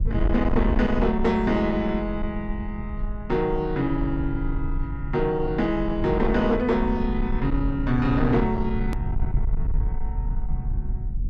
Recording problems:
distorted audio; soft clipping, signal-to-distortion ratio 11 dB
rumble; below 66 Hz, SNR 6 dB
hard cut with a click; at 9 s

